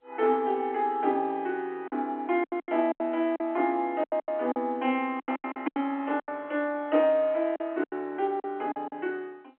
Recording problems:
phone line; 220 Hz to 3.3 kHz, G.711
lost packets; 12% of the sound replaced, filled with silence

